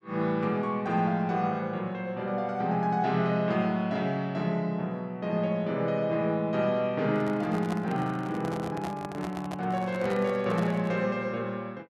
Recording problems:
handling noise; from 7 to 11 s; peak -3 dB vs average level

